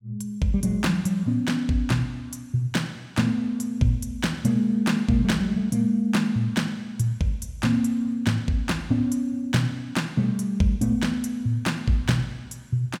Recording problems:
none

